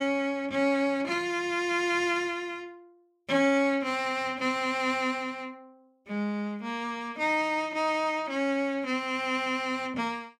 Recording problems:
none

